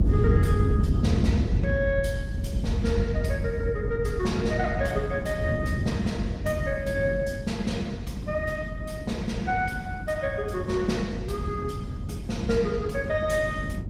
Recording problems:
codec artefacts; Opus, log-spectral distance 2 dB, nothing above 18.9 kHz
low-frequency rumble; below 78 Hz, strongest tone 46 Hz, SNR 3 dB
wind noise; below 180 Hz, SNR 1 dB

